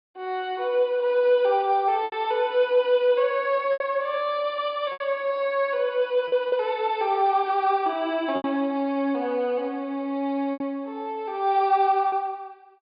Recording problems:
treble cut off; nothing above 5 kHz
lost packets; 4% of the sound replaced, filled with repeated pitch periods

